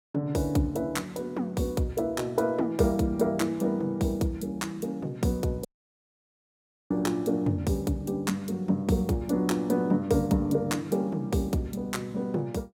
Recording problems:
audio cutting out; at 5.5 s for 1.5 s

